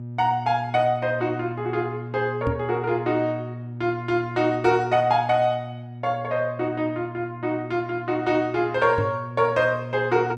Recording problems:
hum; 60 Hz, harmonics up to 600 Hz, SNR 12 dB
microphone bump; at 2.5 s and at 9 s; peak 0 dB vs average level

